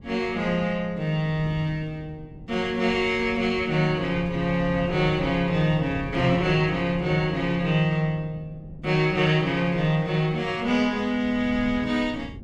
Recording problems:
wind noise; below 210 Hz, SNR 16 dB

